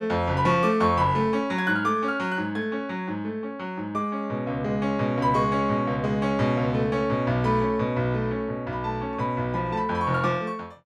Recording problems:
none

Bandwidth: 13 kHz